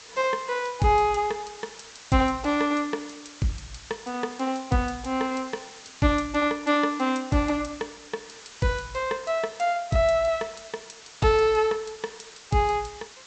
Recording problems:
treble missing; nothing above 8 kHz
background hiss; slope +1 dB per octave, SNR 19 dB

